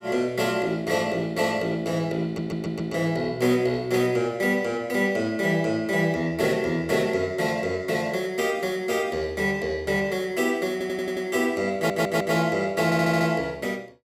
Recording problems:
audio stuttering; 4 times, first at 2 s

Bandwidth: 16.5 kHz